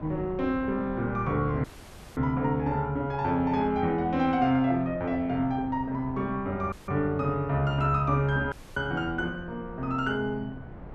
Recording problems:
wind on the microphone; below 360 Hz, SNR 16 dB
dropout; at 1.5 s for 0.5 s, at 6.5 s and at 8.5 s

